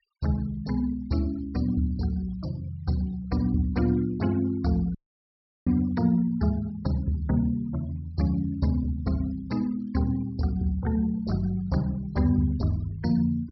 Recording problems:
treble missing; nothing above 5.7 kHz
denoising artefacts; signal-to-artefact ratio 25 dB
dropout; at 5 s for 0.5 s

